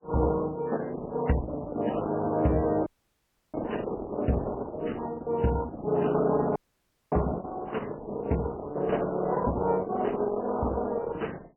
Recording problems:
lossy compression; Opus, then MP3, log-spectral distance 4 dB, nothing above 3 kHz
audio cutting out; at 3 s for 0.5 s and at 6.5 s for 0.5 s

